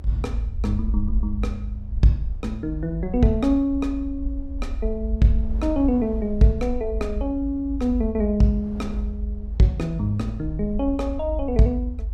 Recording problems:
low-frequency rumble; below 58 Hz, strongest tone 50 Hz, SNR 7 dB
wind noise; below 310 Hz, SNR 24 dB

